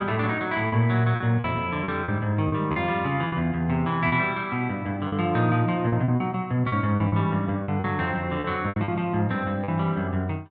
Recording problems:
lost packets; 9% of the sound replaced, filled with repeated pitch periods

